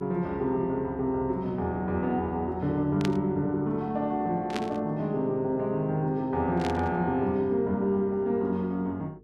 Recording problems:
electrical hum; 50 Hz, harmonics up to 450 Hz, SNR 26 dB
static burst; at 3 s, at 4.5 s and at 6.5 s; peak -2 dB vs average level

